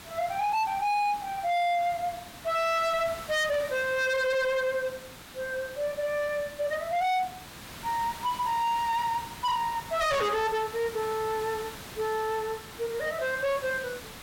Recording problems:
distorted audio; hard clipping, signal-to-distortion ratio 8 dB
hiss; slope -2 dB per octave, SNR 14 dB

